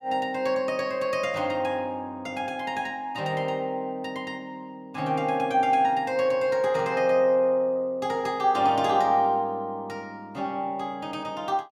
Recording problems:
none

